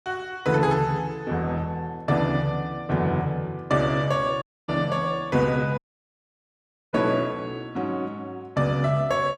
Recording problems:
dropout; at 4.5 s and at 6 s for 1 s

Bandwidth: 12.5 kHz